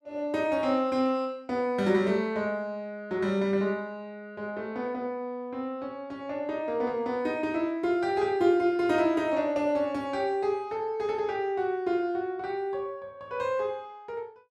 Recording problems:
none

